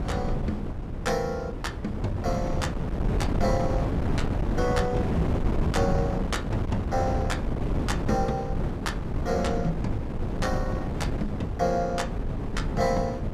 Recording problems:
wind noise; below 270 Hz, SNR -1 dB

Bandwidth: 15.5 kHz